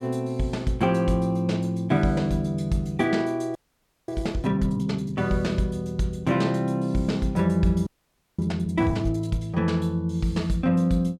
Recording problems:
audio freezing; at 3.5 s for 0.5 s and at 8 s for 0.5 s

